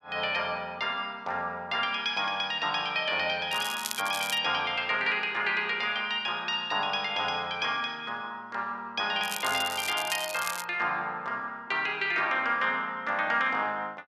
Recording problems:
crackle; at 3.5 s and from 9 to 11 s; loose cable, SNR 8 dB

